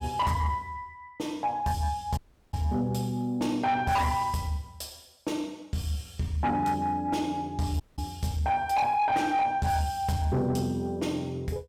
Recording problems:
distortion; soft clipping, signal-to-distortion ratio 11 dB
dropout; at 2 s and at 8 s

